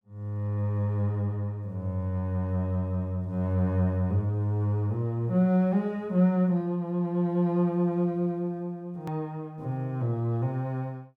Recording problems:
hard cut with a click; at 9 s

